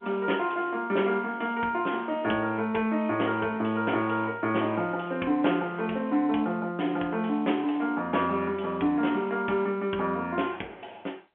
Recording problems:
telephone audio; 190 Hz to 3.3 kHz, G.711

